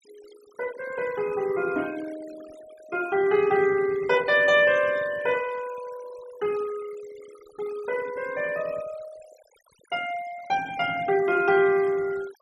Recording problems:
noise reduction artefacts; signal-to-artefact ratio 20 dB

